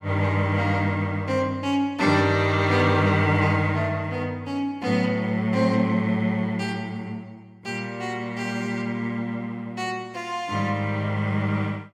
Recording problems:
none

